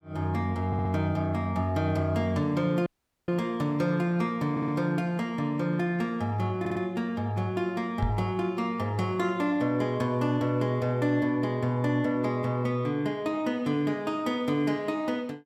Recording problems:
stutter; at 0.5 s, at 4.5 s and at 6.5 s
audio cutting out; at 3 s
microphone thump; at 8 s; peak +1 dB vs average level

